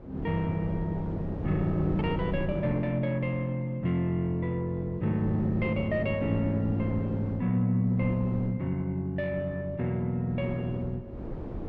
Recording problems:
wind on the microphone; below 370 Hz, SNR 9 dB

